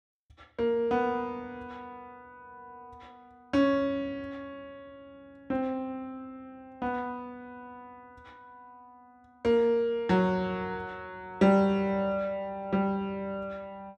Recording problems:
none

